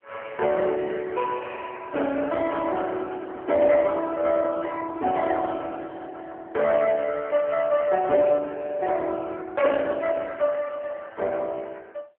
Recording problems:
phone line; 300 Hz to 3 kHz, AMR-NB

